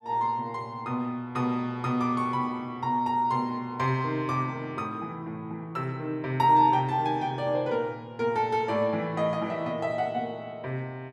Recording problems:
none

